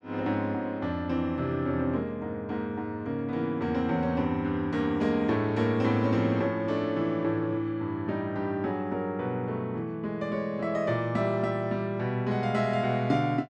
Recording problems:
none

